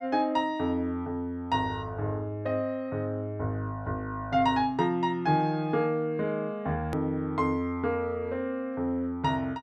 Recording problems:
hard cut with a click; at 7 s

